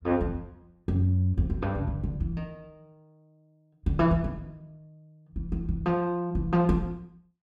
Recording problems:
none

